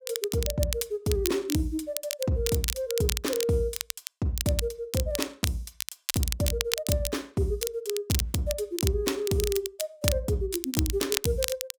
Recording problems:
crackle; vinyl, SNR 4 dB

